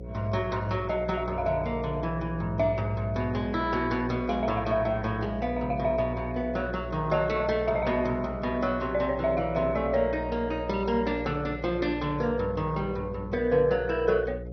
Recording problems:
lossy codec; MP2, log-spectral distance 2 dB, nothing above 5.7 kHz
hum; 60 Hz, harmonics up to 540 Hz, SNR 10 dB

